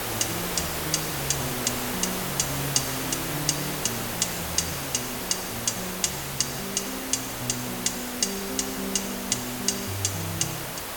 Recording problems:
background hiss; slope -3 dB per octave, SNR 2 dB
wind on the microphone; below 900 Hz, SNR 24 dB

